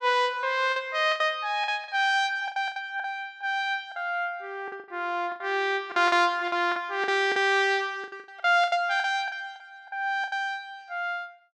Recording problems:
lost packets; 12% of the sound replaced, filled with the last packet

